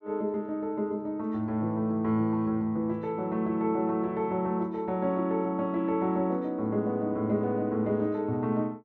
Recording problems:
none

